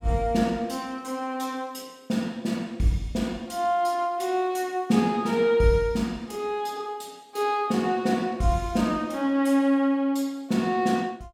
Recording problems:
none

